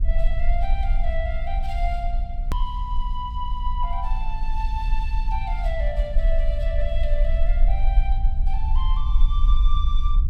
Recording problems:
hum; 60 Hz, harmonics up to 540 Hz, SNR 11 dB
rumble; below 44 Hz, strongest tone 20 Hz, SNR -8 dB
click at an edit; at 2.5 s

